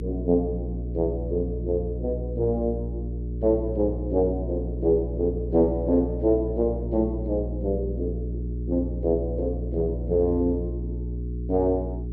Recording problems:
hum; 60 Hz, harmonics up to 420 Hz, SNR 5 dB

